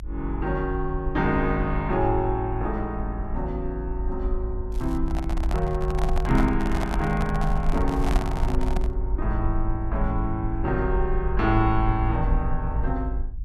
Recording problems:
low-frequency rumble; below 52 Hz, SNR 3 dB
crackle; at 4.5 s and at 8 s; loose cable, SNR 26 dB
handling noise; from 5 to 9 s; peak +1 dB vs average level

